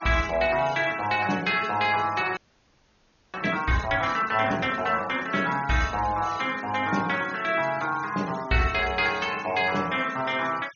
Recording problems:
treble cut off; nothing above 6.8 kHz
noise reduction artefacts; signal-to-artefact ratio 19 dB
audio freezing; at 2.5 s for 1 s

